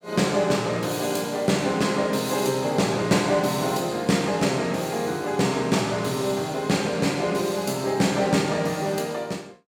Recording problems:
none

